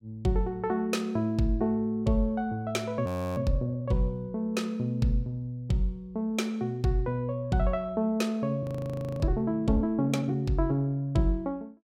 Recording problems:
audio freezing; at 3 s and at 8.5 s for 0.5 s

